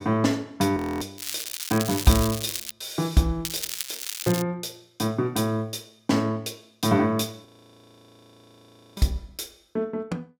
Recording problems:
frozen audio; at 1 s and at 7.5 s for 1.5 s
crackling; from 1 to 2.5 s and at 3.5 s; loose cable, SNR 5 dB

